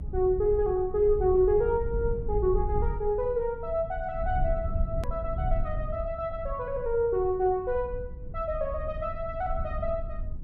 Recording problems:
rumble; below 76 Hz, SNR 7 dB
edit click; at 5 s

